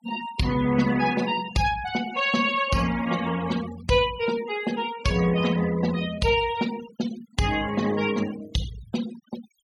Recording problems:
denoising artefacts; signal-to-artefact ratio 14 dB

